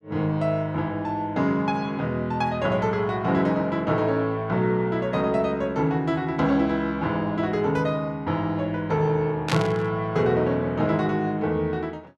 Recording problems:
burst of static; at 9.5 s; peak +2 dB vs average level

